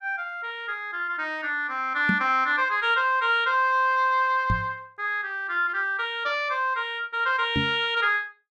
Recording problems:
knock on the microphone; at 2 s, at 4.5 s and at 7.5 s; peak +2 dB vs average level

